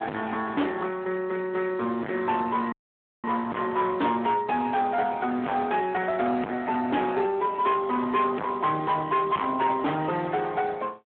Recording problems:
telephone audio; 190 Hz to 3.5 kHz, Speex
distorted audio; hard clipping, uneven, signal-to-distortion ratio 3 dB
dropout; at 2.5 s for 0.5 s

